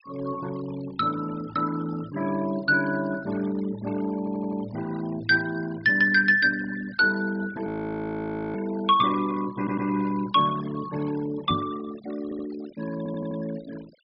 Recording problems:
treble missing; nothing above 5.5 kHz
denoising artefacts; signal-to-artefact ratio 18 dB
audio stuttering; 4 times, first at 4 s
frozen audio; at 7.5 s for 1 s
microphone bump; at 12 s; peak +1 dB vs average level

